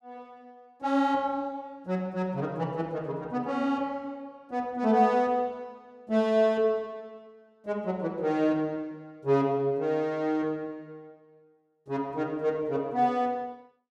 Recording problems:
none

